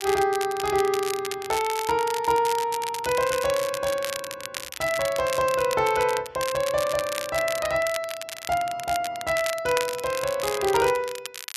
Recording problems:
crackle; vinyl, SNR 9 dB

